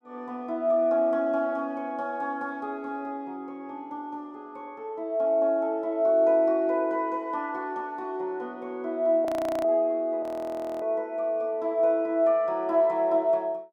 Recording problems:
audio freezing; at 9.5 s and at 10 s for 0.5 s

